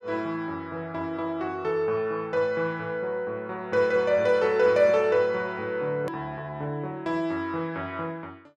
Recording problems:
edit click; at 6 s

